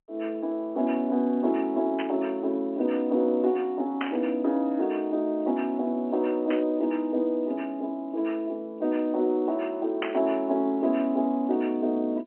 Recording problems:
phone line; 220 Hz to 3.4 kHz, G.711
static burst; 4 times, first at 2 s; peak 0 dB vs average level

